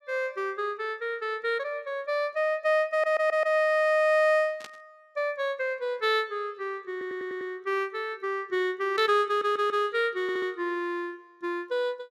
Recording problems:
audio stuttering; 4 times, first at 3 s
burst of static; at 4.5 s and at 9 s; peak -10 dB vs average level

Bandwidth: 15 kHz